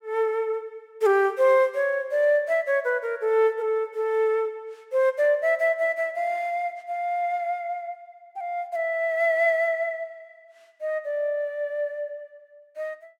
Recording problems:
none

